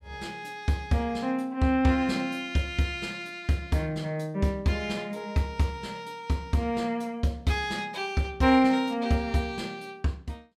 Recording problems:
none

